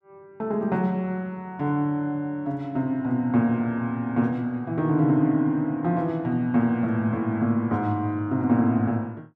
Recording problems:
none

